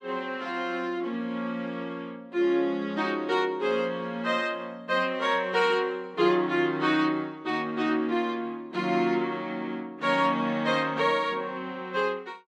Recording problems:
none

